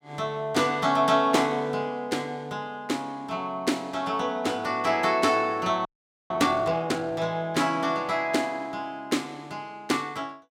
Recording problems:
frozen audio; at 6 s

